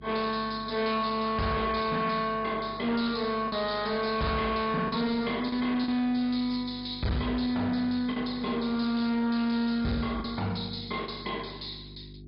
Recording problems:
treble missing; nothing above 5 kHz
lossy compression; MP2, log-spectral distance 5 dB
distorted audio; hard clipping, signal-to-distortion ratio 12 dB
hum; 50 Hz, harmonics up to 400 Hz, SNR 19 dB
packet loss; 2% of the sound replaced, filled with the last packet

